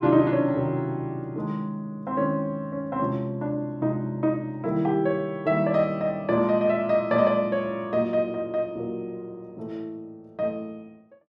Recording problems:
none

